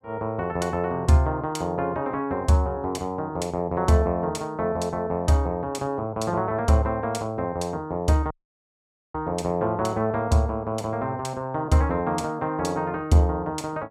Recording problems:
dropout; at 8.5 s for 1 s

